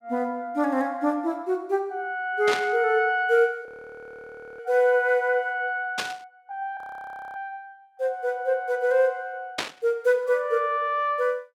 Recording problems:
static burst; at 2.5 s, at 6 s and at 9.5 s; peak +2 dB vs average level
audio freezing; at 3.5 s for 1 s and at 7 s for 0.5 s

